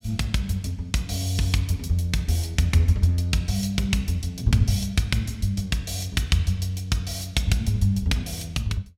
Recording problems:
none

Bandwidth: 16.5 kHz